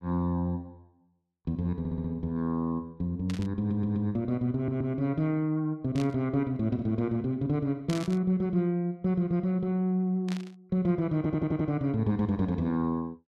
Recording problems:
audio stuttering; 4 times, first at 2 s
burst of static; 4 times, first at 3.5 s; peak -7 dB vs average level

